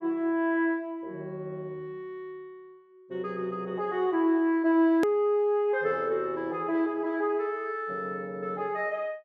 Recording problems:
hard cut with a click; at 5 s

